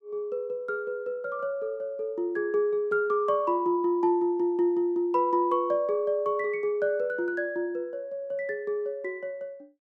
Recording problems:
none

